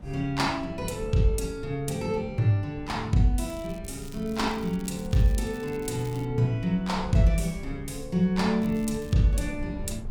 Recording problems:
low-frequency rumble; below 110 Hz, SNR 15 dB
crackling; from 3.5 to 6.5 s and at 8.5 s; loose cable, SNR 23 dB

